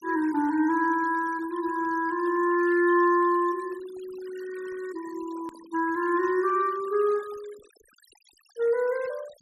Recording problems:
denoising artefacts; signal-to-artefact ratio 23 dB
hard cut with a click; at 5.5 s

